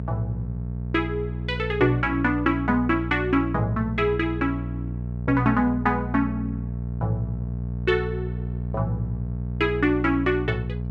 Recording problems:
hum; 60 Hz, harmonics up to 660 Hz, SNR 6 dB

